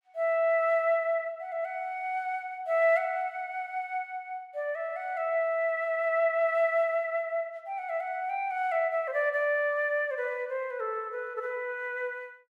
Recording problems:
none

